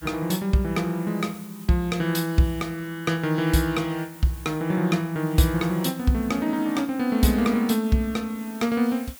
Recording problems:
background hiss; slope +1 dB per octave, SNR 21 dB

